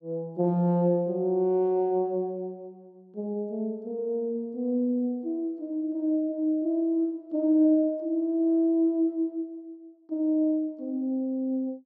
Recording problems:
none

